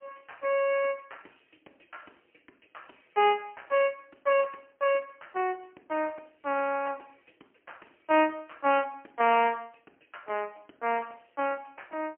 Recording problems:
telephone audio; 260 Hz to 3 kHz, AMR-NB, then MP3

